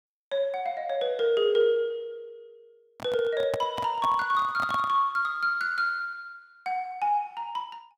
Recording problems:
microphone handling noise; from 3 to 5 s; peak -3 dB vs average level

